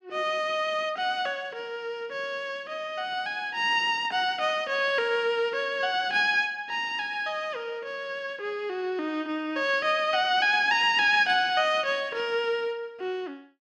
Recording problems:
none

